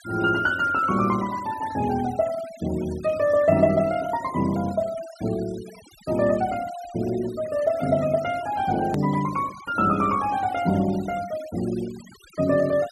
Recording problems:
noise reduction artefacts; signal-to-artefact ratio 19 dB
click at an edit; at 9 s

